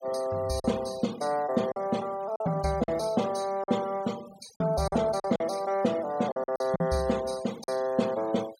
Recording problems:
noise reduction artefacts; signal-to-artefact ratio 19 dB
lost packets; 6% of the sound replaced, filled with silence

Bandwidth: 16.5 kHz